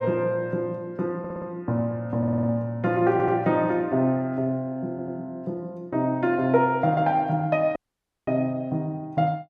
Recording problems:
audio stuttering; 4 times, first at 1 s
audio cutting out; at 8 s for 0.5 s

